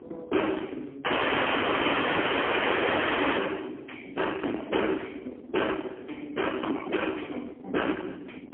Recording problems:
phone line; 240 Hz to 3.3 kHz, AMR-NB, then MP3
distortion; soft clipping, signal-to-distortion ratio 12 dB
wind on the microphone; below 630 Hz, SNR 12 dB
dropout; at 1 s for 2.5 s

